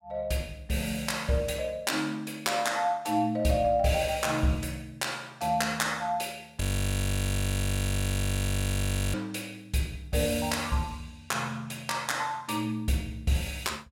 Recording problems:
frozen audio; at 6.5 s for 2.5 s

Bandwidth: 16 kHz